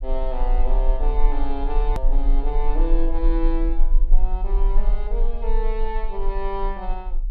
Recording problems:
low-frequency rumble; below 34 Hz, SNR -6 dB
edit click; at 2 s

